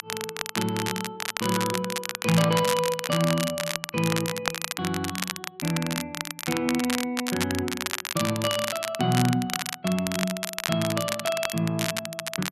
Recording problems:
crackle; vinyl, SNR 3 dB

